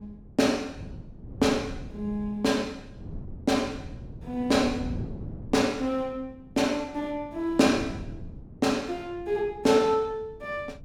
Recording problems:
wind on the microphone; below 210 Hz, SNR 15 dB

